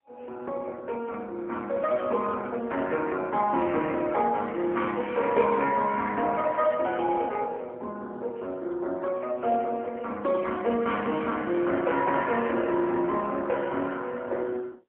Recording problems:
phone line; 240 Hz to 3 kHz, AMR-NB, then MP3

